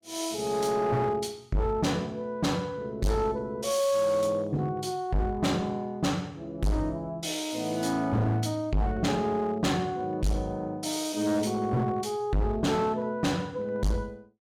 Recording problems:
distortion; hard clipping, uneven, signal-to-distortion ratio 7 dB

